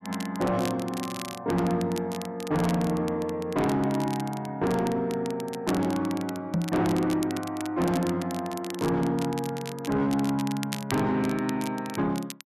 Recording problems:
distorted audio; soft clipping, signal-to-distortion ratio 10 dB
crackle; vinyl, SNR 14 dB
microphone thump; at 6.5 s; peak +4 dB vs average level

